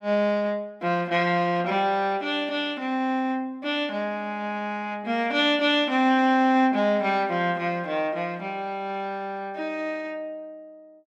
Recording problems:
none

